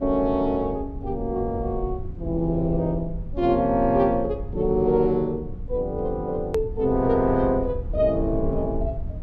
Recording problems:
low-frequency rumble; below 92 Hz, SNR 10 dB
click at an edit; at 6.5 s

